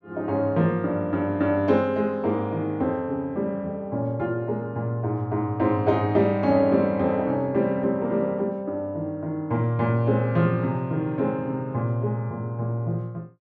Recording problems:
none

